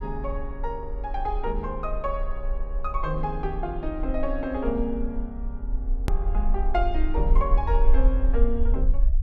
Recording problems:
low-frequency rumble; below 44 Hz, SNR -2 dB
hard cut with a click; at 6 s

